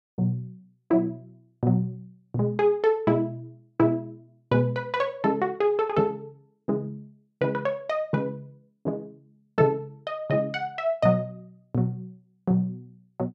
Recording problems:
none

